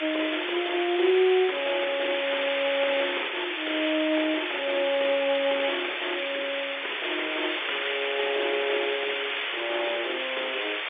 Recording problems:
telephone audio; 300 Hz to 3.6 kHz, G.711
hiss; SNR 2 dB

